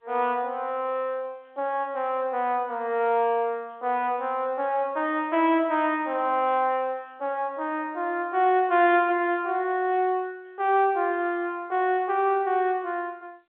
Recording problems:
telephone audio; 260 Hz to 3.5 kHz, G.711

